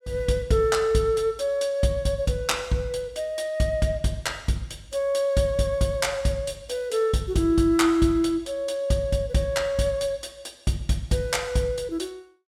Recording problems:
none

